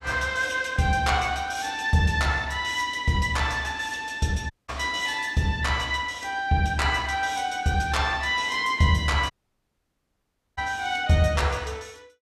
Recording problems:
dropout; at 4.5 s and at 9.5 s for 1.5 s

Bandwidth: 14.5 kHz